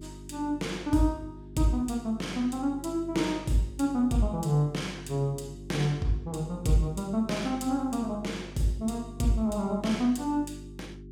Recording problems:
electrical hum; 50 Hz, harmonics up to 400 Hz, SNR 15 dB

